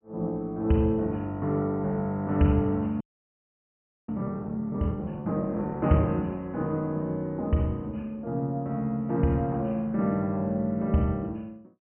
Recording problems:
treble cut off; nothing above 3 kHz
frozen audio; at 3 s for 1 s

